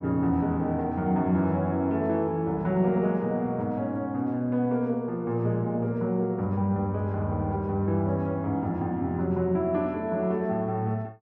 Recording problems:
none

